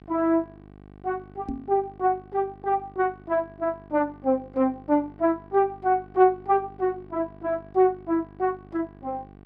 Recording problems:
electrical hum; 50 Hz, harmonics up to 1.6 kHz, SNR 22 dB
microphone bump; at 1.5 s; peak -3 dB vs average level

